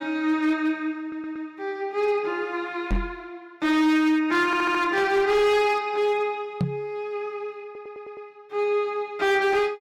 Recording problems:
distorted audio; hard clipping, signal-to-distortion ratio 12 dB
audio stuttering; at 1 s, at 4.5 s and at 7.5 s
microphone bump; at 3 s and at 6.5 s; peak +2 dB vs average level

